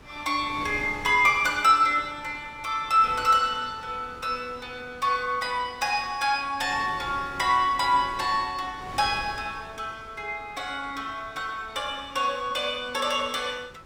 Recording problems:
wind on the microphone; below 1.4 kHz, SNR 20 dB

